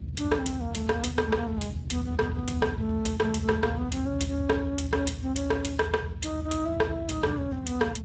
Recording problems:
lossy compression; G.722, then Speex, log-spectral distance 4 dB, nothing above 7.6 kHz
low-frequency rumble; below 140 Hz, strongest tone 78 Hz, SNR 6 dB

